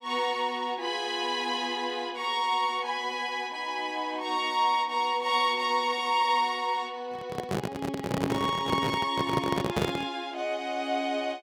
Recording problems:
handling noise; from 7 to 10 s; peak +5 dB vs average level

